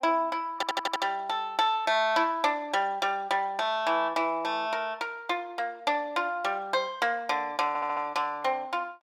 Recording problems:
stutter; at 0.5 s and at 7.5 s

